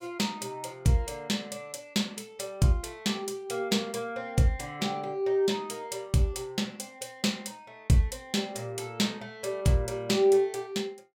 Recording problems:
none

